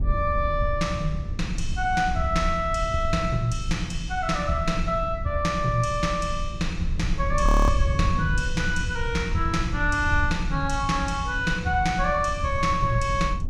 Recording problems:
low-frequency rumble; below 84 Hz, SNR 5 dB
frozen audio; at 7.5 s

